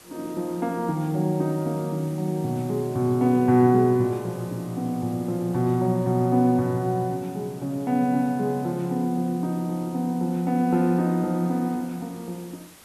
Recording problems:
background hiss; slope -2 dB per octave, SNR 24 dB

